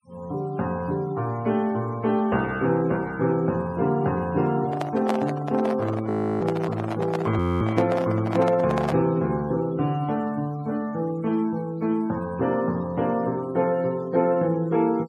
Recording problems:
denoising artefacts; signal-to-artefact ratio 24 dB
microphone handling noise; from 4.5 to 9 s; peak +1 dB vs average level
frozen audio; at 6 s and at 7.5 s

